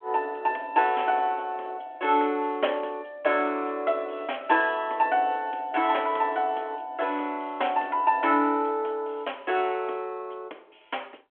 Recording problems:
phone line; 260 Hz to 3.4 kHz, G.726

